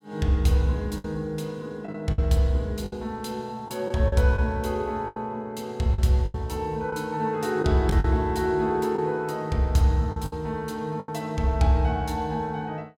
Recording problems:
packet loss; 6% of the sound replaced, filled with the last packet

